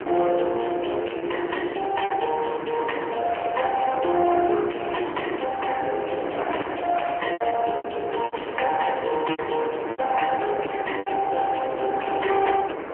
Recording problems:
telephone audio; 260 Hz to 3 kHz, AMR-NB
distortion; hard clipping, signal-to-distortion ratio 8 dB
wind noise; below 1.1 kHz, SNR 8 dB
packet loss; 6% of the sound replaced, filled with repeated pitch periods

